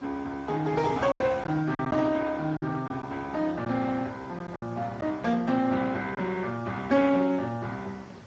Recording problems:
lossy codec; Speex, log-spectral distance 3 dB
wind noise; below 1.2 kHz, SNR 20 dB
lost packets; 4% of the sound replaced, filled with silence

